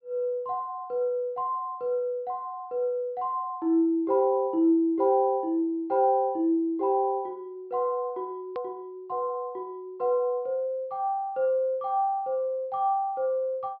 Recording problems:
low-pass filter; nothing above 5.5 kHz
hard cut with a click; at 8.5 s

